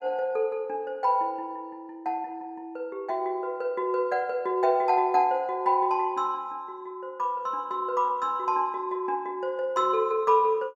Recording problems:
none

